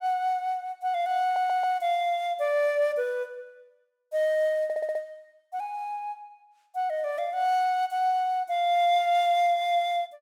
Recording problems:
audio stuttering; at 1 s and at 4.5 s

